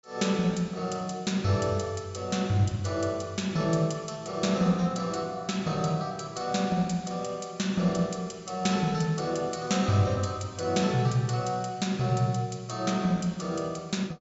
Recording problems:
treble cut off; nothing above 8 kHz

